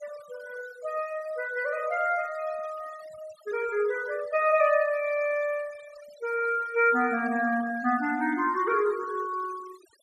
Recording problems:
noise reduction artefacts; signal-to-artefact ratio 19 dB

